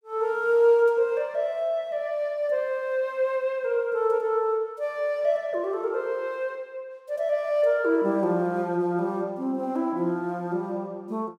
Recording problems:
none

